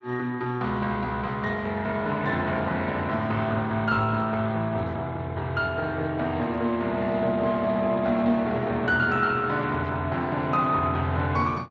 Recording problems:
lossy codec; Speex, log-spectral distance 3 dB

